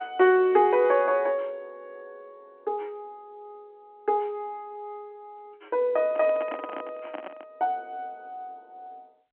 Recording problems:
telephone audio; 240 Hz to 3.8 kHz, G.711
microphone handling noise; from 6 to 7.5 s; peak -6 dB vs average level

